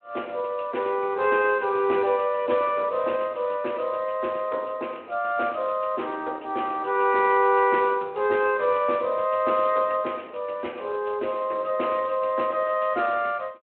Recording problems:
phone line; 280 Hz to 3.1 kHz, Speex

